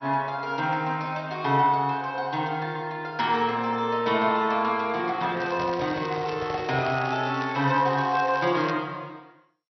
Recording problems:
lossy codec; MP2, log-spectral distance 3 dB, nothing above 5.8 kHz
crackling; from 5.5 to 8.5 s; loose cable, SNR 17 dB
handling noise; from 5.5 to 7 s; peak -7 dB vs average level

